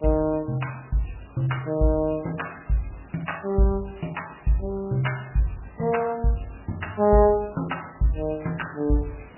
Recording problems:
codec artefacts; MP3, log-spectral distance 9 dB, nothing above 2.9 kHz
hiss; SNR 24 dB

